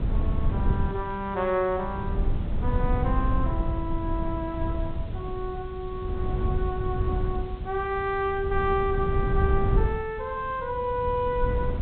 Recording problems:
treble cut off; nothing above 4 kHz
hiss; SNR 24 dB
wind on the microphone; below 110 Hz, SNR 0 dB

